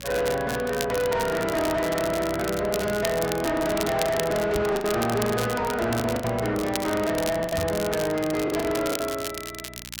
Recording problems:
distortion; soft clipping, signal-to-distortion ratio 7 dB
hum; 60 Hz, harmonics up to 660 Hz, SNR 19 dB
crackle; vinyl, SNR 10 dB
packet loss; 5% of the sound replaced, filled with the last packet
microphone bump; at 4.5 s and at 7.5 s; peak +2 dB vs average level

